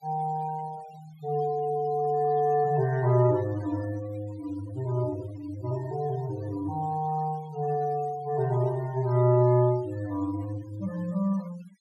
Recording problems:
noise reduction artefacts; signal-to-artefact ratio 23 dB

